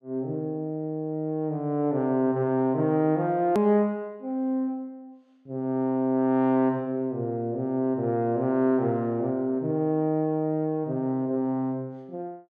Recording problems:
hard cut with a click; at 3.5 s

